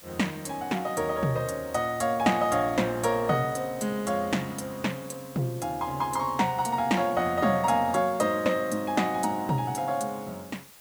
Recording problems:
background hiss; slope 0 dB per octave, SNR 20 dB

